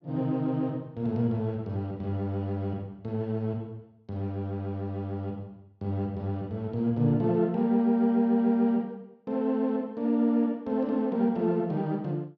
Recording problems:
none

